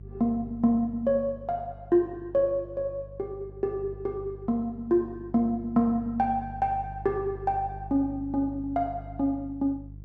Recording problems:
hum; 50 Hz, harmonics up to 350 Hz, SNR 16 dB

